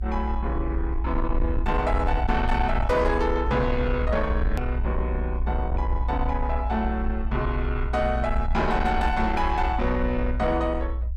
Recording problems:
distorted audio; soft clipping, signal-to-distortion ratio 12 dB
low-frequency rumble; below 62 Hz, SNR 3 dB
hard cut with a click; at 4.5 s

